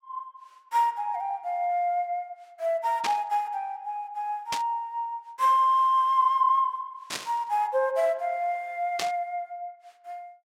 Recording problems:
burst of static; 4 times, first at 3 s; peak 0 dB vs average level

